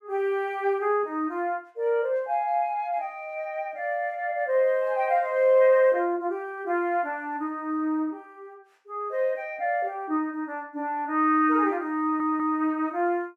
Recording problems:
stutter; at 12 s

